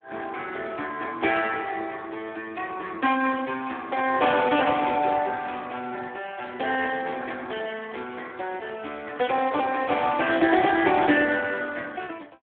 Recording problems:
telephone audio; 190 Hz to 3.5 kHz, Speex

